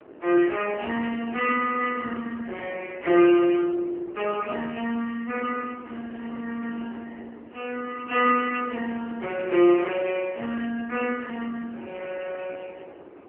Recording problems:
phone line; 280 Hz to 3 kHz, AMR-NB
wind noise; below 620 Hz, SNR 19 dB

